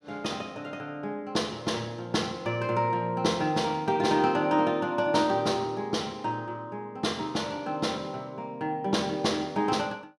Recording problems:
none

